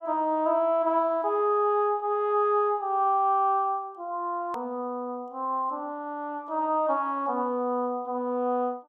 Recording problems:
hard cut with a click; at 4.5 s

